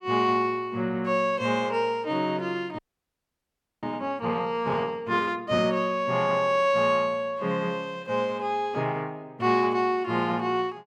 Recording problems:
frozen audio; at 3 s for 1 s

